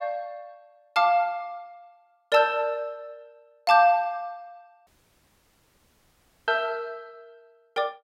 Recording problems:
audio cutting out; at 5 s for 1.5 s

